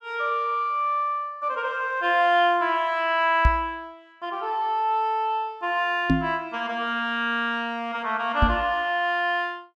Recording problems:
microphone bump; at 3.5 s, at 6 s and at 8.5 s; peak +7 dB vs average level

